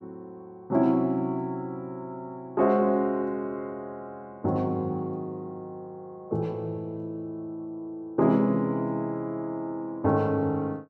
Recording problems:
none

